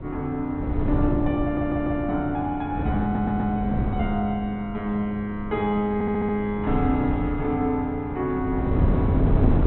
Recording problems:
treble missing; nothing above 4.1 kHz
wind noise; below 240 Hz, SNR 3 dB
stutter; at 1.5 s, at 3 s and at 6 s

